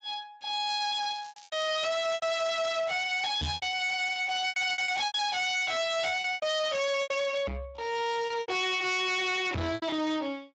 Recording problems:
codec artefacts; Speex, log-spectral distance 6 dB, nothing above 7.3 kHz
distorted audio; soft clipping, signal-to-distortion ratio 7 dB
lost packets; 10% of the sound replaced, filled with repeated pitch periods
crackle; from 0.5 to 6.5 s; loose cable, SNR 23 dB
microphone thump; at 3.5 s, at 7.5 s and at 9.5 s; peak 0 dB vs average level

